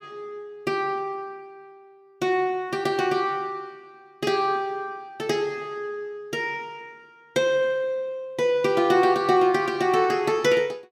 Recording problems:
none

